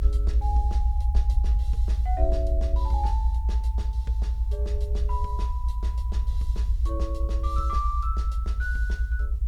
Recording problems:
background hiss; slope -3 dB per octave, SNR 29 dB
rumble; below 64 Hz, strongest tone 54 Hz, SNR -9 dB

